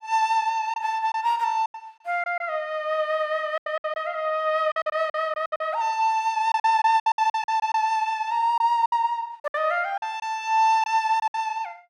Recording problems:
lost packets; 11% of the sound replaced, filled with silence

